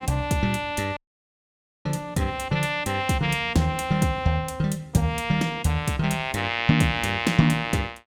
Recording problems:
dropout; at 1 s for 1 s

